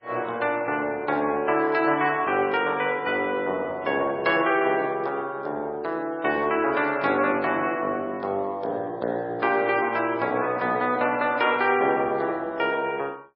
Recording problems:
codec artefacts; MP3, log-spectral distance 2 dB, nothing above 5.2 kHz

